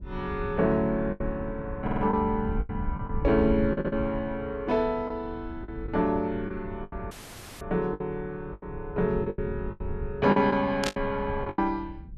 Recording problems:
rumble; below 110 Hz, SNR 11 dB
lost packets; 9% of the sound replaced, filled with the last packet
audio stuttering; at 2 s and at 3.5 s
audio cutting out; at 7 s for 0.5 s; filled with static
burst of static; at 11 s; peak +2 dB vs average level

